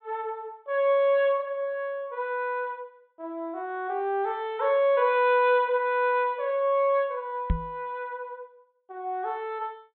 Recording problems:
treble cut off; nothing above 4 kHz
microphone thump; at 7.5 s; peak +4 dB vs average level

